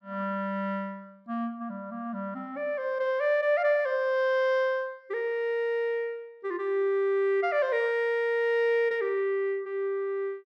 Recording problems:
none

